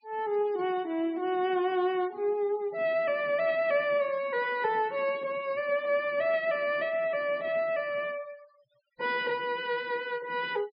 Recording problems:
treble cut off; nothing above 5.1 kHz
noise reduction artefacts; signal-to-artefact ratio 24 dB

